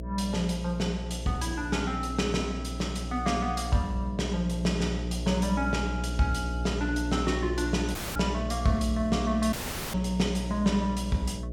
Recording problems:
hum; 60 Hz, harmonics up to 660 Hz, SNR 5 dB
audio cutting out; at 8 s and at 9.5 s

